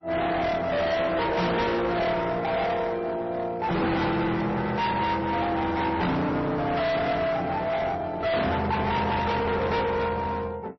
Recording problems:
lossy compression; AAC, then MP3, log-spectral distance 3 dB, nothing above 5.7 kHz
distortion; hard clipping, uneven, signal-to-distortion ratio 5 dB

